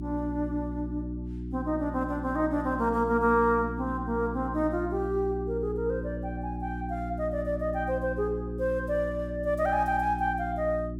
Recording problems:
hum; 60 Hz, harmonics up to 360 Hz, SNR 7 dB

